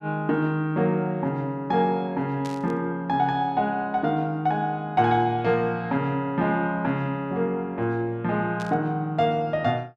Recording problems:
burst of static; at 2.5 s and at 8.5 s; peak -12 dB vs average level

